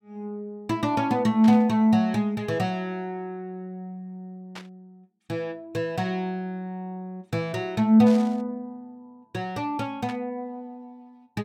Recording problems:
burst of static; 4 times, first at 1.5 s; peak -11 dB vs average level

